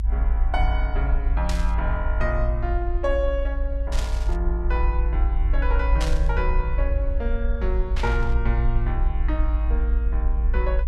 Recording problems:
rumble; below 54 Hz, SNR -5 dB
burst of static; 4 times, first at 1.5 s; peak +2 dB vs average level

